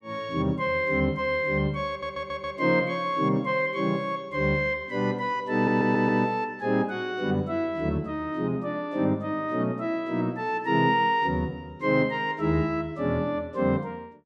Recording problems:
stutter; at 2 s and at 5.5 s

